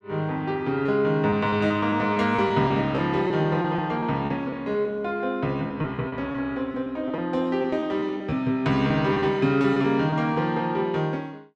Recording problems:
lost packets; 8% of the sound replaced, filled with repeated pitch periods

